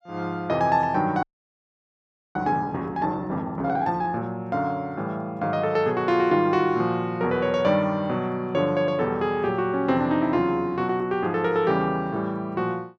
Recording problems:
audio freezing; at 1 s for 1 s

